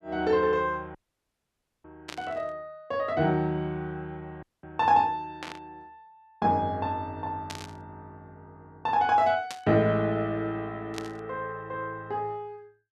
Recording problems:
dropout; at 1 s for 1 s and at 4.5 s
burst of static; 5 times, first at 2 s; peak -5 dB vs average level

